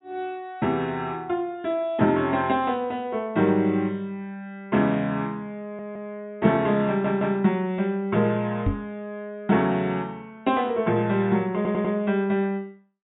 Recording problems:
low-pass filter; nothing above 4 kHz
stutter; at 5.5 s, at 7 s and at 12 s
microphone bump; at 8.5 s; peak +4 dB vs average level

